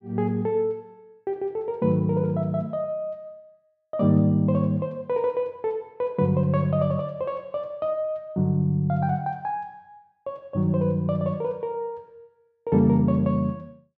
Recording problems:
none

